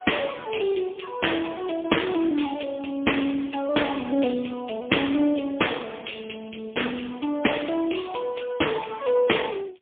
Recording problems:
phone line; 260 Hz to 3.4 kHz, AMR-NB, then MP3

